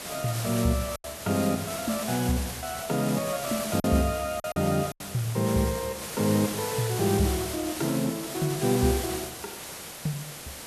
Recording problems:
hiss; slope -2 dB per octave, SNR 7 dB
lost packets; 3% of the sound replaced, filled with silence

